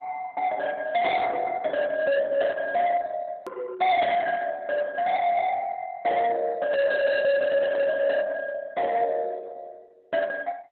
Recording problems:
lossy compression; Opus, log-spectral distance 3 dB, nothing above 4 kHz
distortion; soft clipping, signal-to-distortion ratio 7 dB
click at an edit; at 3.5 s

